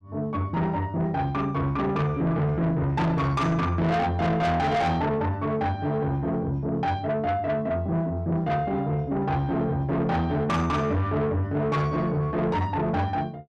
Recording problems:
distorted audio; soft clipping, signal-to-distortion ratio 8 dB

